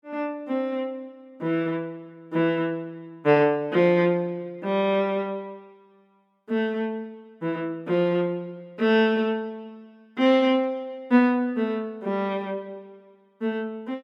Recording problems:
none

